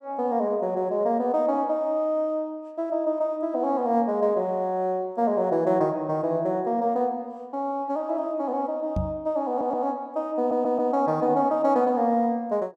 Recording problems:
microphone thump; at 9 s; peak 0 dB vs average level
audio stuttering; at 9.5 s and at 10 s

